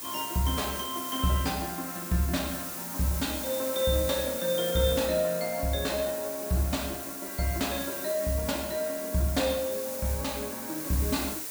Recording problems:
background hiss; slope -1 dB per octave, SNR 5 dB

